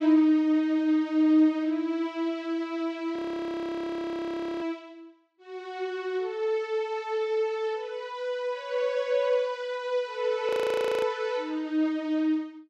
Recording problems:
frozen audio; at 3 s for 1.5 s and at 10 s for 0.5 s

